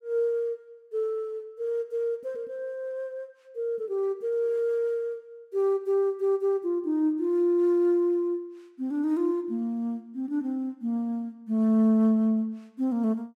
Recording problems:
none

